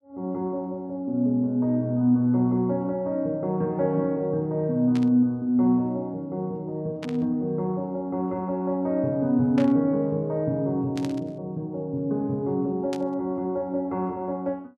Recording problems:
burst of static; 5 times, first at 5 s; peak -8 dB vs average level

